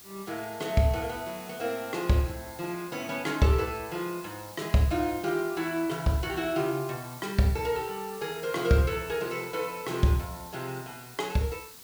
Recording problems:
background hiss; SNR 16 dB

